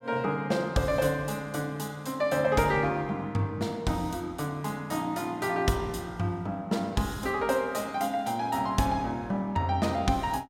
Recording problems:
none

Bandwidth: 16 kHz